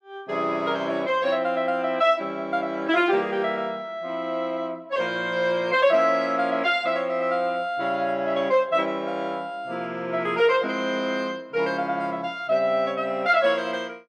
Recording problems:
none

